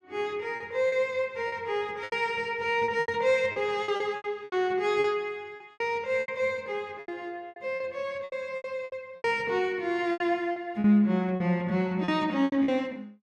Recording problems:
packet loss; 13% of the sound replaced, filled with repeated pitch periods

